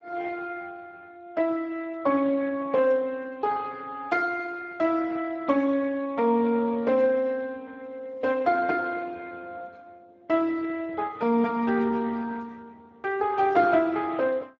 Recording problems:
lossy compression; Speex, log-spectral distance 3 dB

